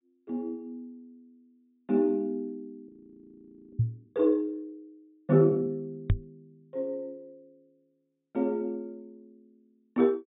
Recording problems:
low-pass filter; nothing above 4 kHz
frozen audio; at 3 s for 1 s
microphone bump; at 4 s and at 6 s; peak +8 dB vs average level

